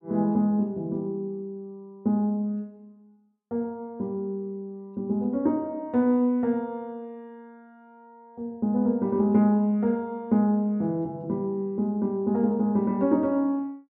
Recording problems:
none

